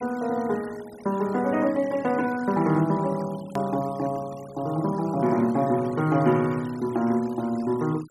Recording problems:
noise reduction artefacts; signal-to-artefact ratio 21 dB
hard cut with a click; at 3.5 s

